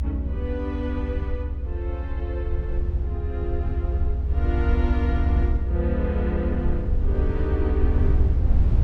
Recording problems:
low-frequency rumble; below 78 Hz, SNR -6 dB
wind noise; below 220 Hz, SNR 18 dB

